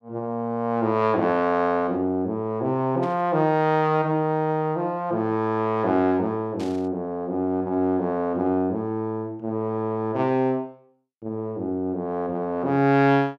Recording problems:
burst of static; at 3 s and at 6.5 s; peak -14 dB vs average level

